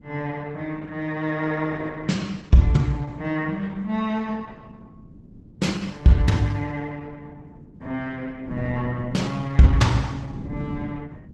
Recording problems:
codec artefacts; Opus, log-spectral distance 3 dB, nothing above 12 kHz
wind on the microphone; below 250 Hz, SNR 17 dB

